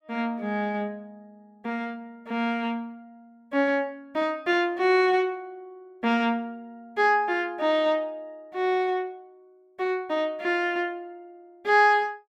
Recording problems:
none

